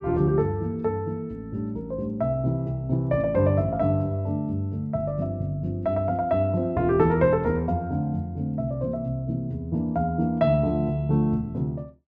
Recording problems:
none

